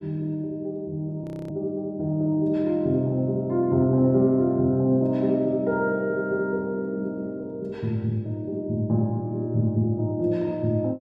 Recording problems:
frozen audio; at 1 s

